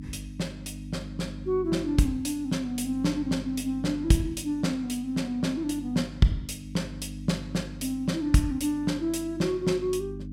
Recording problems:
hum; 50 Hz, harmonics up to 300 Hz, SNR 12 dB

